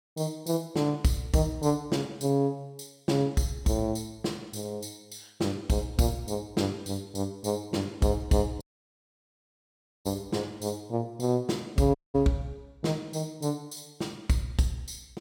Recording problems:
audio cutting out; at 8.5 s for 1.5 s and at 12 s

